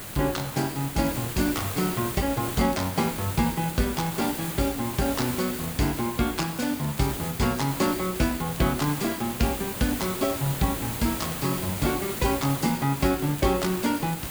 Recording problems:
hiss; slope -3 dB per octave, SNR 6 dB
crackle; vinyl, SNR 26 dB

